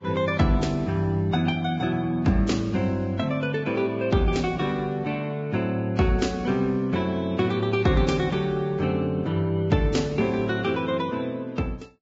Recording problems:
lossy compression; Vorbis, log-spectral distance 2 dB, nothing above 7.3 kHz

